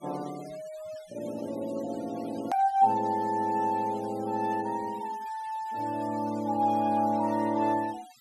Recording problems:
noise reduction artefacts; signal-to-artefact ratio 22 dB
hard cut with a click; at 2.5 s

